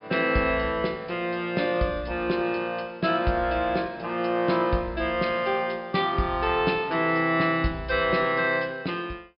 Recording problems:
treble cut off; nothing above 5.5 kHz

